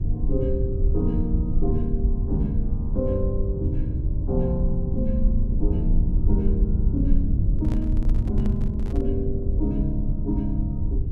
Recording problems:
low-frequency rumble; below 82 Hz, SNR -3 dB
handling noise; from 7.5 to 9 s; peak -5 dB vs average level

